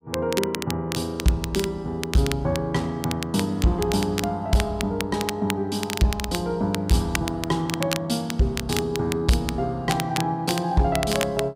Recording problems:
distorted audio; hard clipping, signal-to-distortion ratio 12 dB
crackle; vinyl, SNR 8 dB

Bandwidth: 15.5 kHz